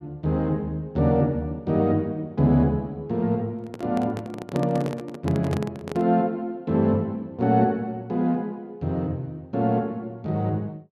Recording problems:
microphone handling noise; from 3.5 to 6 s; peak -2 dB vs average level

